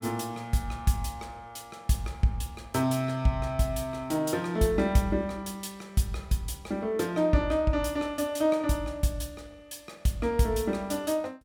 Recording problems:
none

